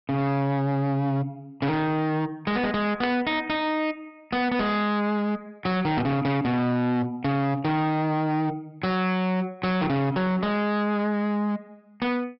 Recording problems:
treble missing; nothing above 5.3 kHz
distorted audio; hard clipping, signal-to-distortion ratio 6 dB
burst of static; at 3 s; peak -2 dB vs average level

